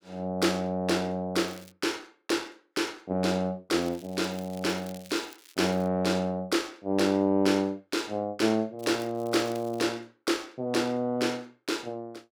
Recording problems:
crackling; at 1.5 s, from 4 to 6 s and from 9 to 10 s; loose cable, SNR 22 dB

